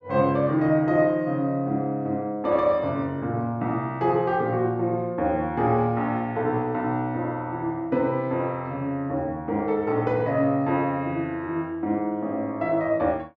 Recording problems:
none

